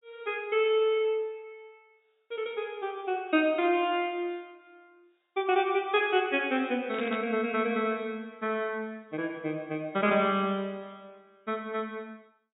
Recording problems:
treble cut off; nothing above 4 kHz
static burst; at 7 s; peak -7 dB vs average level

